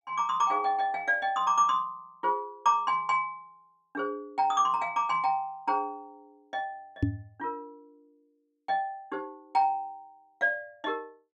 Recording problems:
microphone bump; at 7 s; peak +6 dB vs average level

